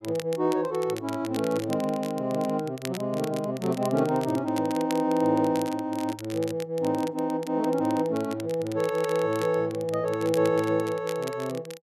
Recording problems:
crackle; vinyl, SNR 17 dB

